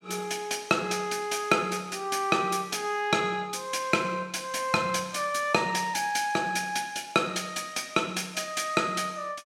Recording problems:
none

